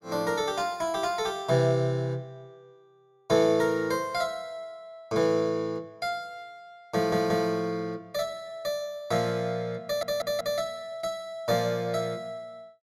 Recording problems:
audio stuttering; at 7 s and at 10 s

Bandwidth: 15.5 kHz